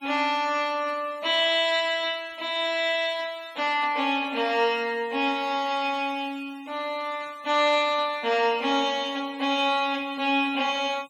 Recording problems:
noise reduction artefacts; signal-to-artefact ratio 25 dB

